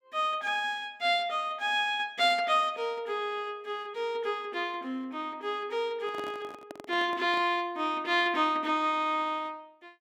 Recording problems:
handling noise; from 6 to 7.5 s; peak -8 dB vs average level

